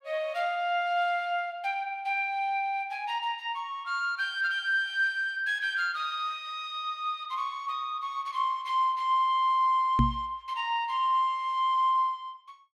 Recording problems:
microphone bump; at 10 s; peak +7 dB vs average level

